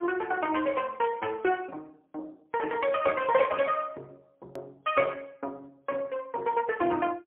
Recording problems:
phone line; 260 Hz to 3.3 kHz, AMR-NB, then MP3
hard cut with a click; at 4.5 s

